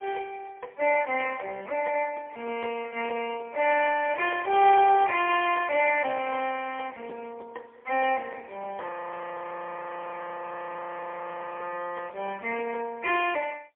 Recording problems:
phone line; 340 Hz to 3.5 kHz, AMR-NB, then MP3
frozen audio; at 9 s for 2.5 s

